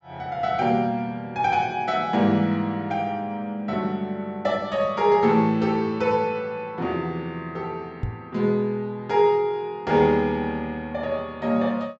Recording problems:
treble missing; nothing above 7.7 kHz
microphone bump; at 8 s; peak 0 dB vs average level

